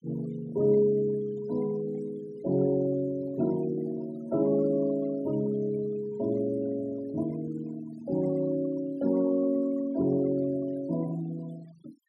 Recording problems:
denoising artefacts; signal-to-artefact ratio 21 dB

